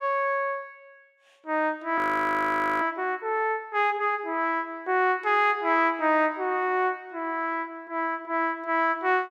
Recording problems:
audio freezing; at 2 s for 1 s

